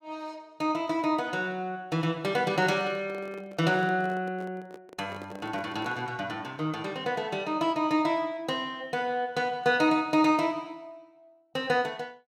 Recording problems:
microphone handling noise; from 2.5 to 6 s; peak -11 dB vs average level

